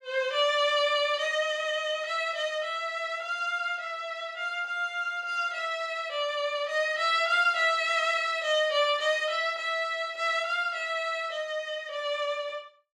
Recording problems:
none

